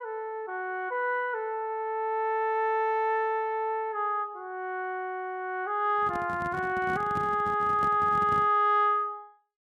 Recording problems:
handling noise; from 6 to 8.5 s; peak -6 dB vs average level

